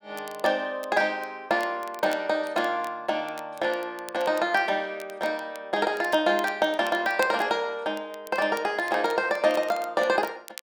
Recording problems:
crackling; vinyl, SNR 21 dB

